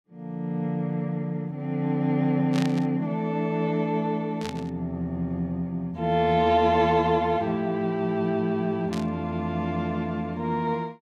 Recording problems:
burst of static; at 2.5 s, at 4.5 s and at 9 s; peak -5 dB vs average level

